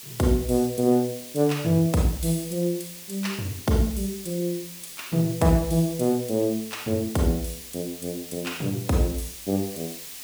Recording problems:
hiss; SNR 13 dB

